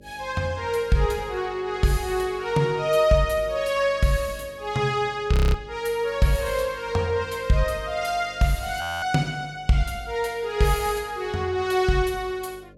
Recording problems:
hum; 50 Hz, harmonics up to 600 Hz, SNR 24 dB
audio freezing; at 5.5 s and at 9 s

